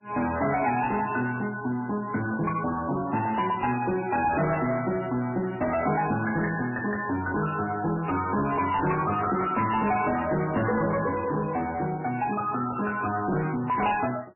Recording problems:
lossy compression; MP3, log-spectral distance 5 dB, nothing above 2.4 kHz
distortion; soft clipping, signal-to-distortion ratio 8 dB

